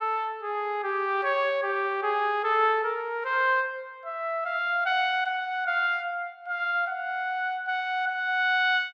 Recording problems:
none

